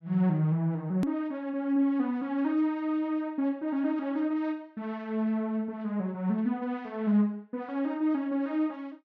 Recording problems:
edit click; at 1 s

